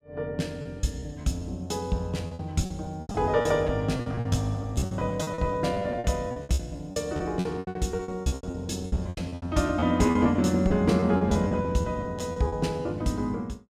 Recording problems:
lost packets; 18% of the sound replaced, filled with repeated pitch periods

